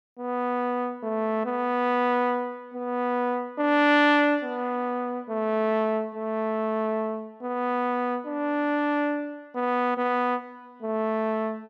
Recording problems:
none

